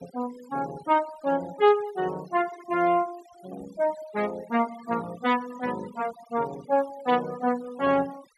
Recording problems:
noise reduction artefacts; signal-to-artefact ratio 20 dB

